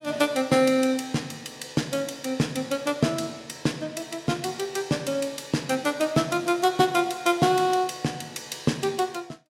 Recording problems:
none

